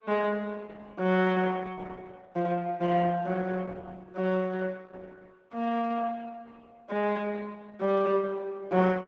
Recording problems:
lossy compression; Opus, log-spectral distance 3 dB

